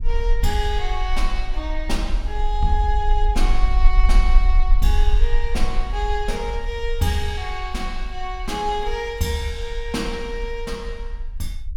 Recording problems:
rumble; below 42 Hz, SNR -1 dB

